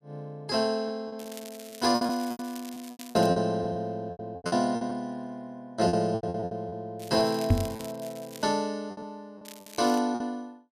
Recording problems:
lost packets; 13% of the sound replaced, filled with repeated pitch periods
crackle; from 1 to 3.5 s, from 7 to 8.5 s and at 9.5 s; loose cable, SNR 17 dB
microphone bump; at 7.5 s; peak +10 dB vs average level

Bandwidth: 14.5 kHz